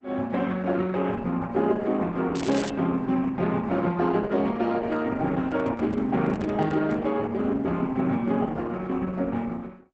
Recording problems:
lossy codec; Opus, log-spectral distance 3 dB, nothing above 7.3 kHz
crackle; at 2.5 s; loose cable, SNR 14 dB
microphone handling noise; from 5.5 to 7 s; peak -4 dB vs average level

